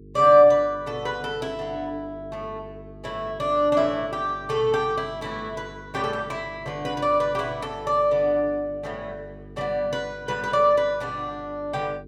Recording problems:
electrical hum; 50 Hz, harmonics up to 450 Hz, SNR 21 dB

